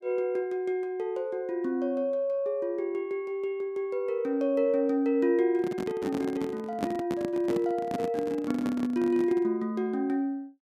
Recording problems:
microphone handling noise; from 5.5 to 9.5 s; peak +2 dB vs average level

